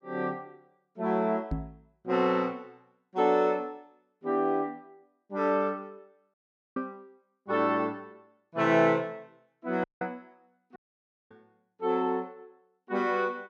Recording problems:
knock on the microphone; at 1.5 s; peak +1 dB vs average level
dropout; at 6.5 s, at 10 s and at 11 s for 0.5 s

